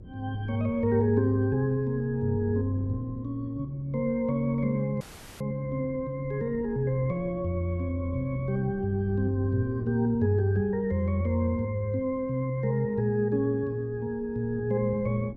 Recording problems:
electrical hum; 60 Hz, harmonics up to 360 Hz, SNR 25 dB
wind on the microphone; below 230 Hz, SNR 19 dB
audio cutting out; at 5 s

